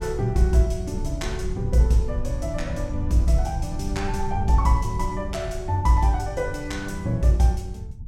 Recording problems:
low-frequency rumble; below 90 Hz, SNR 8 dB

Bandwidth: 16.5 kHz